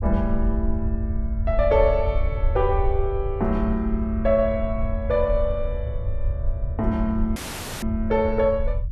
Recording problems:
rumble; below 74 Hz, SNR 4 dB
audio cutting out; at 7.5 s

